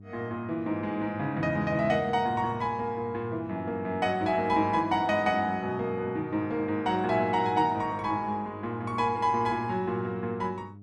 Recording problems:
electrical hum; 50 Hz, harmonics up to 400 Hz, SNR 18 dB

